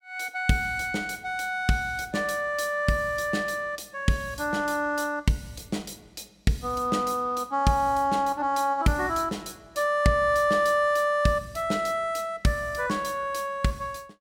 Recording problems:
none

